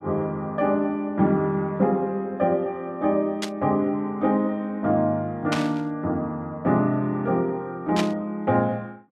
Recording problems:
burst of static; at 3.5 s, at 5.5 s and at 8 s; peak +1 dB vs average level

